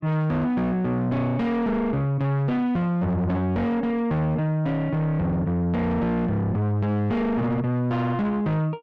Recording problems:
distorted audio; soft clipping, signal-to-distortion ratio 8 dB

